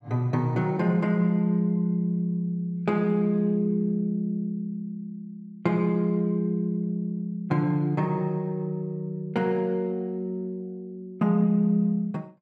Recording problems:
none

